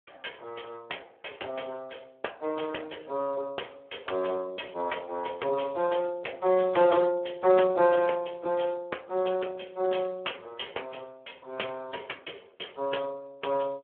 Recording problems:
telephone audio; 320 Hz to 3.3 kHz, Speex

